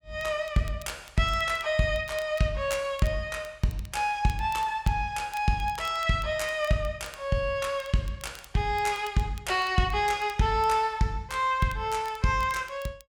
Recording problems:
crackling; vinyl, SNR 23 dB

